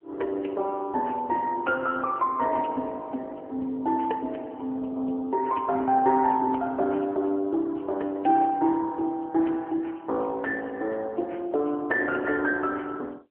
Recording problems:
telephone audio; 260 Hz to 3.6 kHz, AMR-NB

